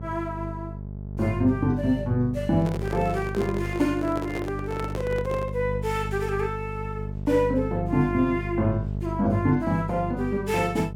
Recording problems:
mains hum; 50 Hz, harmonics up to 650 Hz, SNR 7 dB
handling noise; from 2.5 to 5.5 s; peak -3 dB vs average level

